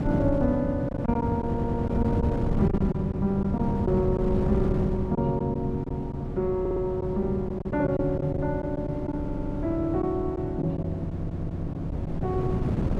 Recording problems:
wind on the microphone; below 230 Hz, SNR 3 dB
packet loss; 5% of the sound replaced, filled with silence
stutter; 4 times, first at 1.5 s

